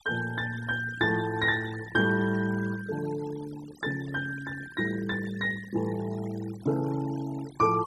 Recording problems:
noise reduction artefacts; signal-to-artefact ratio 18 dB

